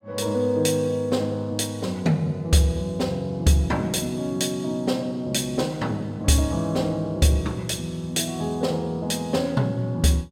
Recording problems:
none

